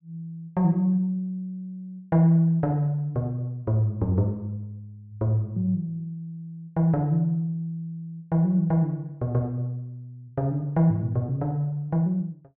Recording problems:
none

